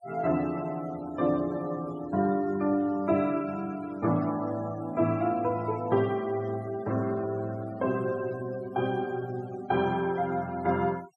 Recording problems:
denoising artefacts; signal-to-artefact ratio 21 dB

